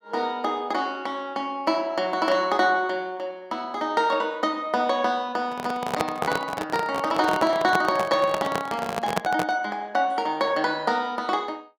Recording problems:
microphone handling noise; from 5.5 to 9.5 s; peak +4 dB vs average level

